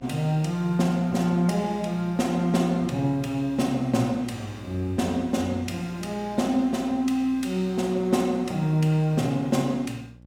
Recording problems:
hum; 60 Hz, harmonics up to 840 Hz, SNR 23 dB

